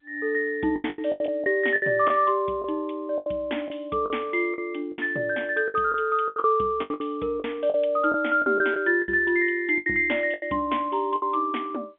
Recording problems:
phone line; 170 Hz to 3.5 kHz, G.711
lost packets; 12% of the sound replaced, filled with the last packet

